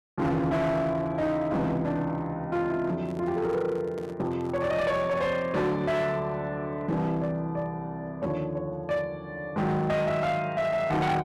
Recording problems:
distortion; hard clipping, signal-to-distortion ratio 10 dB
microphone handling noise; from 3 to 5 s; peak -9 dB vs average level

